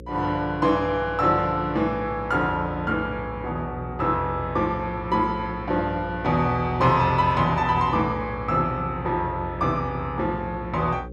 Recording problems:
electrical hum; 60 Hz, harmonics up to 540 Hz, SNR 14 dB

